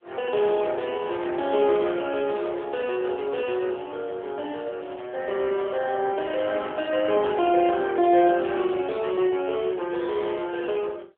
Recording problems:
phone line; 300 Hz to 3.5 kHz, AMR-NB

